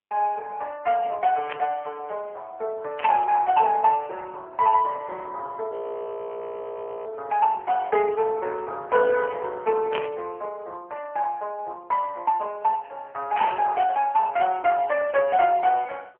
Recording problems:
telephone audio; 370 Hz to 2.6 kHz, AMR-NB
static burst; 4 times, first at 1.5 s; peak -2 dB vs average level
frozen audio; at 5.5 s for 1.5 s

